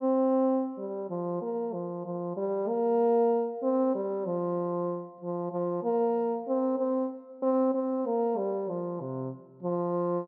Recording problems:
none

